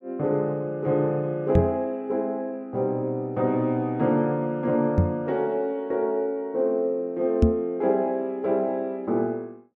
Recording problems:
microphone bump; at 1.5 s, at 5 s and at 7.5 s; peak +10 dB vs average level

